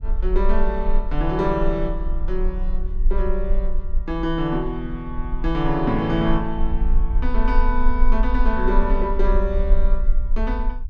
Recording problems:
rumble; below 38 Hz, strongest tone 20 Hz, SNR 0 dB

